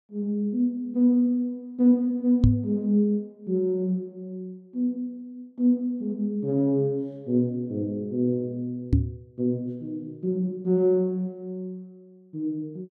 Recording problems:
microphone thump; at 2.5 s and at 9 s; peak +9 dB vs average level

